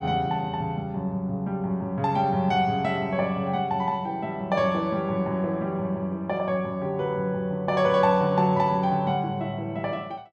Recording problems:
none

